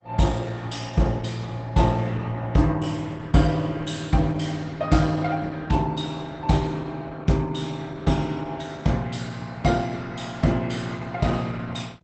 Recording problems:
lossy codec; Opus, log-spectral distance 4 dB, nothing above 8.2 kHz

